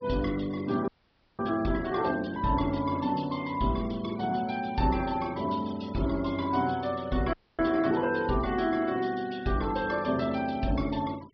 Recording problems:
low-pass filter; nothing above 5.5 kHz
denoising artefacts; signal-to-artefact ratio 21 dB
frozen audio; at 1 s for 0.5 s and at 7.5 s

